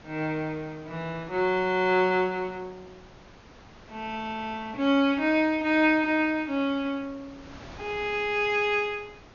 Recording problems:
treble cut off; nothing above 6.9 kHz
wind on the microphone; below 1.7 kHz, SNR 23 dB

